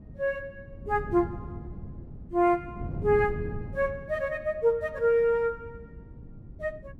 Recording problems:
wind noise; below 190 Hz, SNR 13 dB

